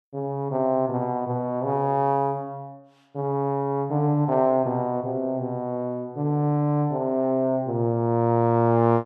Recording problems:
none

